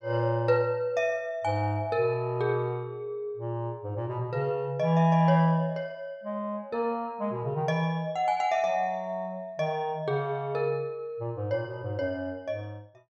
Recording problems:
none

